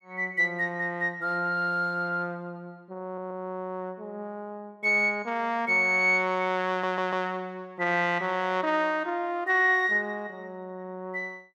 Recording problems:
audio stuttering; at 3 s and at 6.5 s

